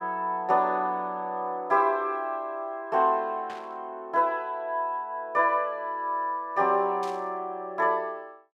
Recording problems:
static burst; at 3.5 s and at 7 s; peak -12 dB vs average level

